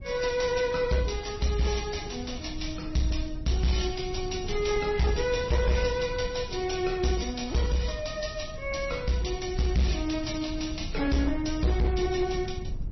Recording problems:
codec artefacts; AAC, then MP3, log-spectral distance 6 dB, nothing above 5.8 kHz
distortion; hard clipping, uneven, signal-to-distortion ratio 11 dB
rumble; below 88 Hz, SNR 11 dB

